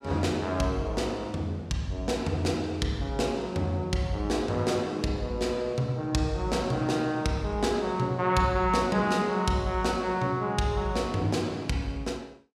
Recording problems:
none

